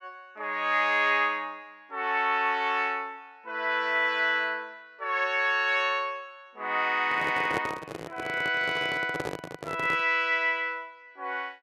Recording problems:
handling noise; from 7 to 10 s; peak -1 dB vs average level

